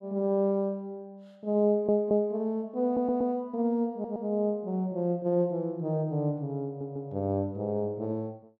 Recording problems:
audio stuttering; 4 times, first at 1.5 s

